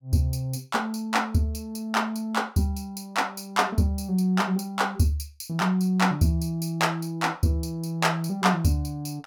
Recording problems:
none

